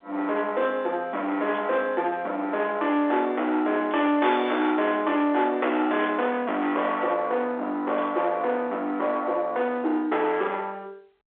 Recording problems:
telephone audio; 260 Hz to 3.5 kHz, G.711
distorted audio; soft clipping, signal-to-distortion ratio 10 dB
burst of static; 4 times, first at 1.5 s; peak -12 dB vs average level

